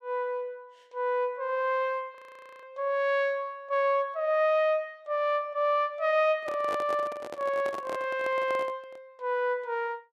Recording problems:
frozen audio; at 2 s
microphone handling noise; from 6.5 to 9 s; peak -3 dB vs average level

